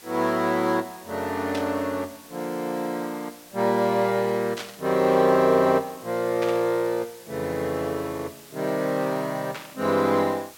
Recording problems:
hiss; slope 0 dB per octave, SNR 21 dB
burst of static; 4 times, first at 1.5 s; peak -5 dB vs average level

